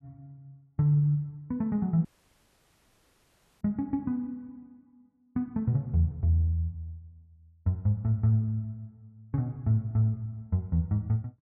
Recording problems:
audio cutting out; at 2 s for 1.5 s

